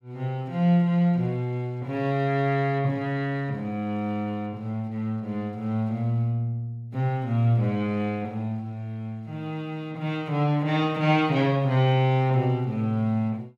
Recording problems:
none

